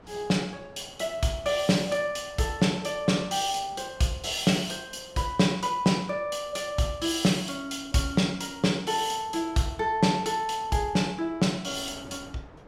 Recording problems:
wind noise; below 880 Hz, SNR 24 dB

